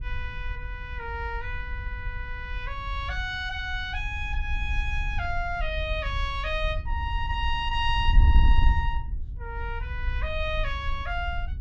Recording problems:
wind on the microphone; below 66 Hz, SNR 0 dB

